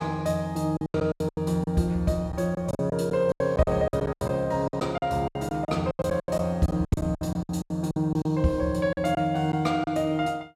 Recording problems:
packet loss; 16% of the sound replaced, filled with silence

